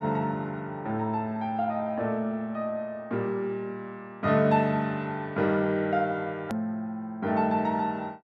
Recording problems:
click at an edit; at 6.5 s

